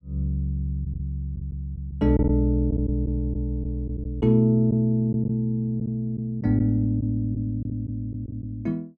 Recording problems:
packet loss; 5% of the sound replaced, filled with silence

